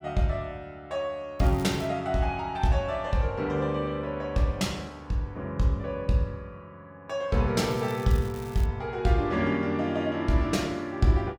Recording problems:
crackling; at 1.5 s and from 7.5 to 8.5 s; loose cable, SNR 21 dB

